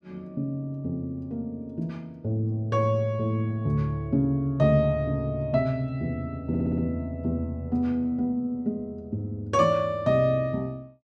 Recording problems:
audio stuttering; at 6.5 s

